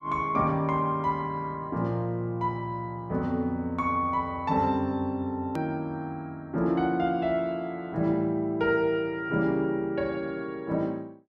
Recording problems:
hard cut with a click; at 5.5 s

